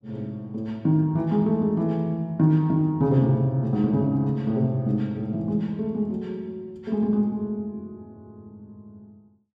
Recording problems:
none

